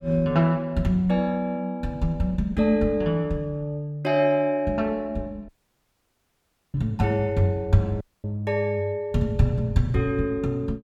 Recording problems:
audio cutting out; at 5.5 s for 1.5 s and at 8 s

